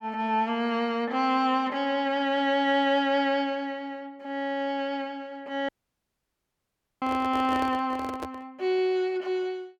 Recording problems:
audio cutting out; at 5.5 s for 1.5 s
handling noise; from 7 to 8.5 s; peak -5 dB vs average level

